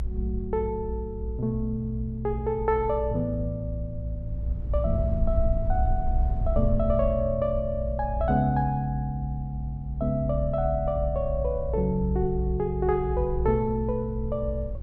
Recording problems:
low-frequency rumble; below 62 Hz, strongest tone 58 Hz, SNR 4 dB

